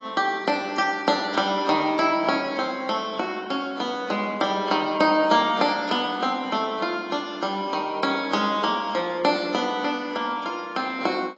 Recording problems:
codec artefacts; AAC, log-spectral distance 3 dB, nothing above 7.3 kHz

